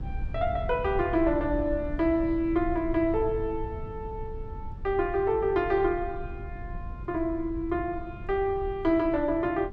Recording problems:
low-frequency rumble; below 92 Hz, SNR 11 dB

